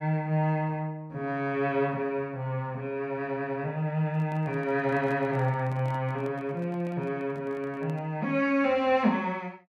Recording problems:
microphone handling noise; from 4 to 8 s; peak -12 dB vs average level

